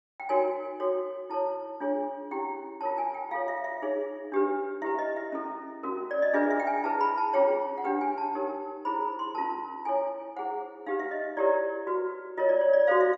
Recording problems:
none

